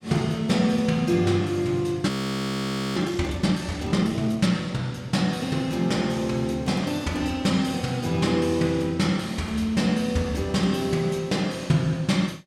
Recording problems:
audio freezing; at 2 s for 1 s

